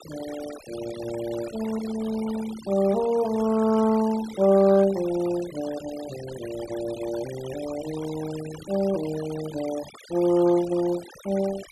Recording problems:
noise reduction artefacts; signal-to-artefact ratio 16 dB

